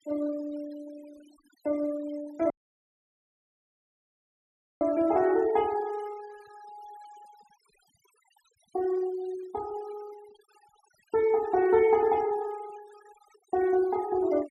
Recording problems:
noise reduction artefacts; signal-to-artefact ratio 23 dB
audio cutting out; at 2.5 s for 2.5 s

